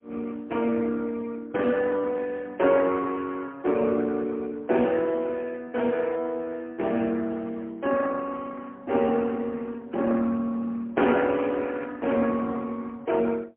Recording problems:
phone line; 190 Hz to 3.3 kHz, AMR-NB, then MP3

